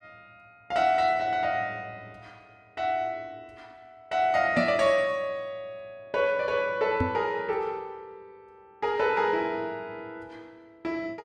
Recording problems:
knock on the microphone; at 4.5 s and at 7 s; peak +4 dB vs average level

